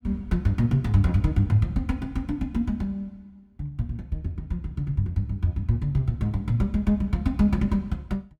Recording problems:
none

